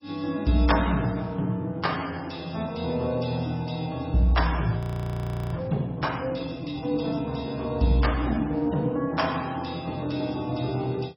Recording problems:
codec artefacts; MP3, log-spectral distance 5 dB, nothing above 4.9 kHz
frozen audio; at 5 s for 0.5 s

